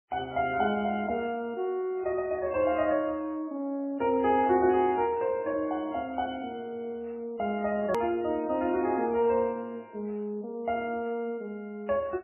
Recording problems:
lossy compression; MP3, log-spectral distance 2 dB, nothing above 13.1 kHz
hard cut with a click; at 8 s

